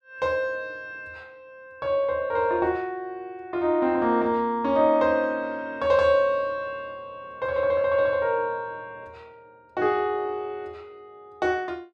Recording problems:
none

